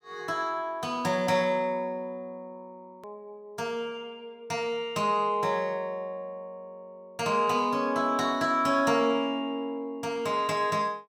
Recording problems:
edit click; at 3 s

